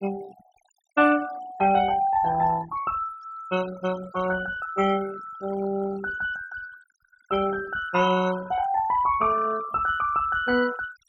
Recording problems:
noise reduction artefacts; signal-to-artefact ratio 17 dB

